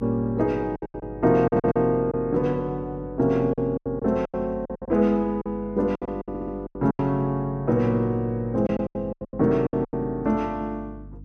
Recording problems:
hum; 50 Hz, harmonics up to 300 Hz, SNR 18 dB
packet loss; 12% of the sound replaced, filled with silence
audio stuttering; at 1.5 s and at 6.5 s

